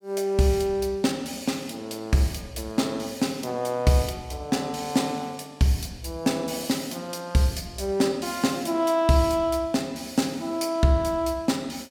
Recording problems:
none

